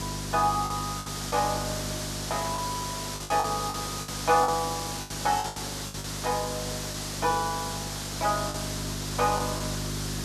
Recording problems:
hum; 50 Hz, harmonics up to 400 Hz, SNR 8 dB
background hiss; SNR 4 dB
lost packets; 8% of the sound replaced, filled with the last packet

